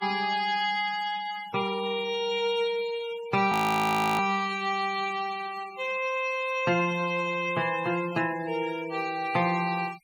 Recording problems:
denoising artefacts; signal-to-artefact ratio 17 dB
audio freezing; at 3.5 s for 0.5 s

